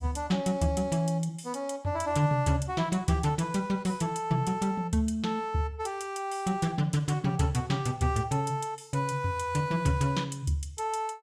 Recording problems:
none

